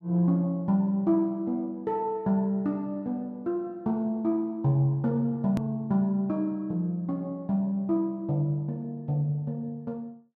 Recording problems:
click at an edit; at 5.5 s

